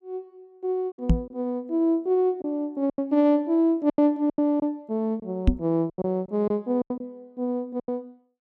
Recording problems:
lost packets; 9% of the sound replaced, filled with silence
microphone bump; at 1 s and at 5.5 s; peak +9 dB vs average level

